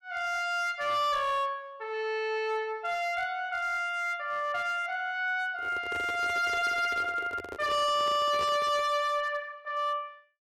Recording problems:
distortion; hard clipping, signal-to-distortion ratio 10 dB
handling noise; from 5.5 to 9 s; peak -7 dB vs average level

